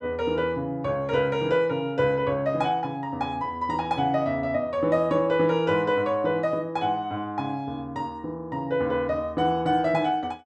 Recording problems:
none

